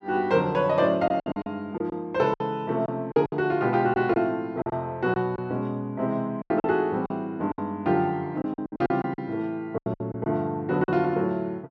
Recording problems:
packet loss; 10% of the sound replaced, filled with silence

